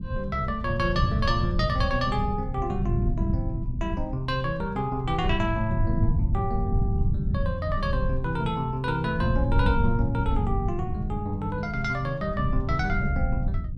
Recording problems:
rumble; below 120 Hz, SNR 2 dB

